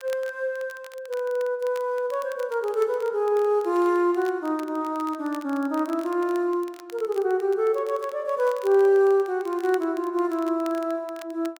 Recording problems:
crackling; vinyl, SNR 24 dB

